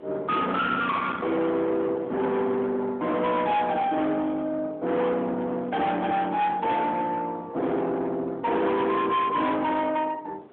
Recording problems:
telephone audio; 280 Hz to 4 kHz, AMR-NB
distortion; soft clipping, signal-to-distortion ratio 7 dB
wind on the microphone; below 1.4 kHz, SNR 15 dB

